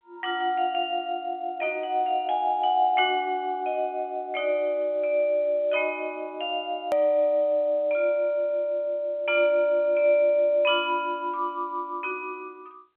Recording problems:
phone line; 320 Hz to 3.3 kHz, G.711
click at an edit; at 7 s

